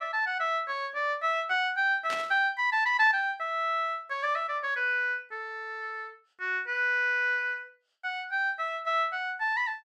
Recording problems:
static burst; at 2 s; peak -5 dB vs average level

